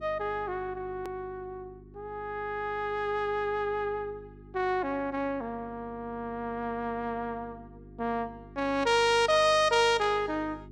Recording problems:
hum; 50 Hz, harmonics up to 400 Hz, SNR 21 dB
click at an edit; at 1 s

